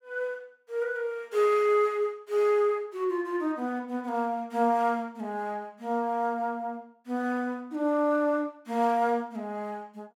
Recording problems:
none

